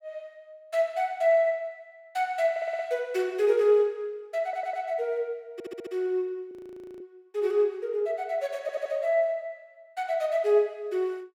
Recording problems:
audio stuttering; 4 times, first at 2.5 s
frozen audio; at 6.5 s

